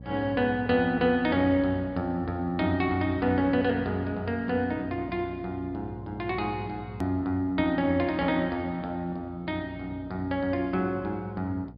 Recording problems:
low-pass filter; nothing above 5 kHz
hum; 60 Hz, harmonics up to 540 Hz, SNR 17 dB
hard cut with a click; at 7 s

